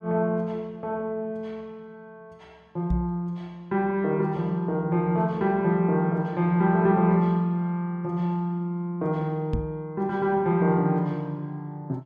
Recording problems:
microphone bump; at 3 s and at 9.5 s; peak +1 dB vs average level

